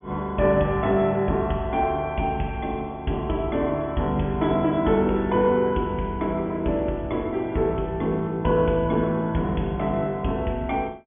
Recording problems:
treble cut off; nothing above 3.4 kHz

